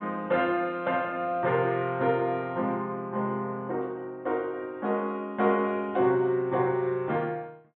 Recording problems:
treble missing; nothing above 4 kHz

